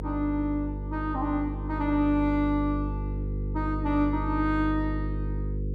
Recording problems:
electrical hum; 50 Hz, harmonics up to 500 Hz, SNR 4 dB

